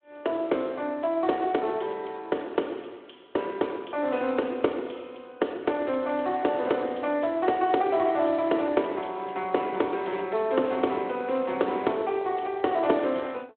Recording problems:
phone line; 260 Hz to 3.5 kHz, Speex

